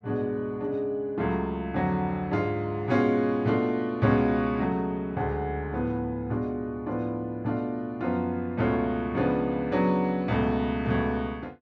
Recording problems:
none

